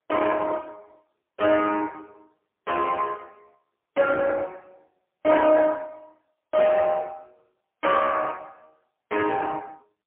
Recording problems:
phone line; 280 Hz to 2.6 kHz, AMR-NB, then MP3

